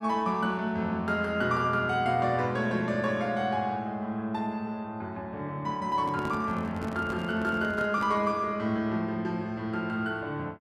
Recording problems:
handling noise; from 6 to 8 s; peak -3 dB vs average level

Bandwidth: 14 kHz